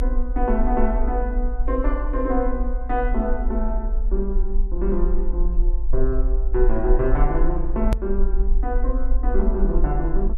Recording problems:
low-frequency rumble; below 48 Hz, strongest tone 20 Hz, SNR -1 dB
click at an edit; at 8 s

